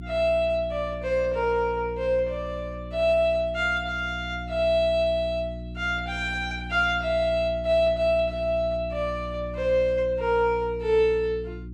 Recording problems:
electrical hum; 60 Hz, harmonics up to 360 Hz, SNR 12 dB

